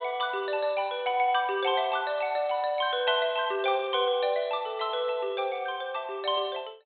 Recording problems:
treble missing; nothing above 4 kHz

